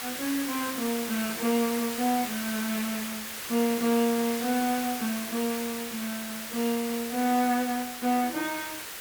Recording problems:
background hiss; SNR 5 dB

